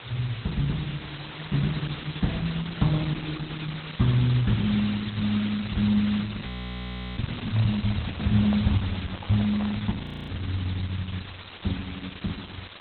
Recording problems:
codec artefacts; Opus, log-spectral distance 18 dB, nothing above 18.3 kHz
background hiss; SNR 12 dB
frozen audio; at 6.5 s for 0.5 s and at 10 s
microphone handling noise; from 7.5 to 10 s; peak -5 dB vs average level

